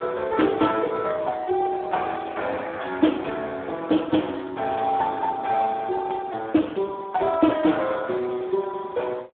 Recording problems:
telephone audio; 220 Hz to 3.4 kHz, Speex

